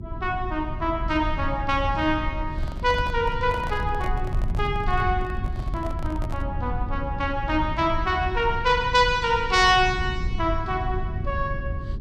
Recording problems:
electrical hum; 50 Hz, harmonics up to 400 Hz, SNR 16 dB
rumble; below 94 Hz, SNR 7 dB
microphone handling noise; from 2.5 to 6.5 s; peak -9 dB vs average level

